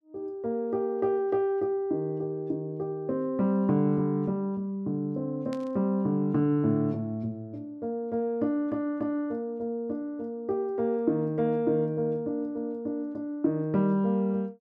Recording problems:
burst of static; at 5.5 s; peak -13 dB vs average level

